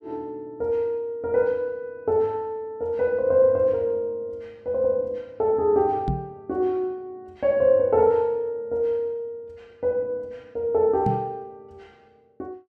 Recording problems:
microphone bump; at 6 s and at 11 s; peak +1 dB vs average level

